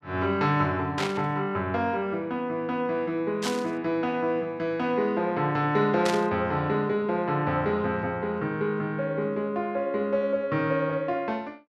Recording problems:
burst of static; at 1 s, at 3.5 s and at 6 s; peak 0 dB vs average level

